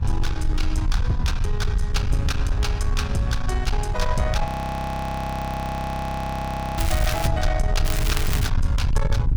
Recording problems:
distortion; soft clipping, signal-to-distortion ratio 11 dB
rumble; below 82 Hz, SNR -1 dB
wind on the microphone; below 690 Hz, SNR 19 dB
frozen audio; at 4.5 s for 2.5 s
crackling; at 7 s and at 8 s; loose cable, SNR 4 dB

